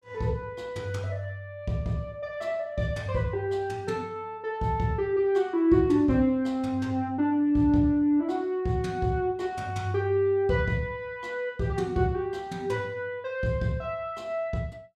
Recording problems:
none

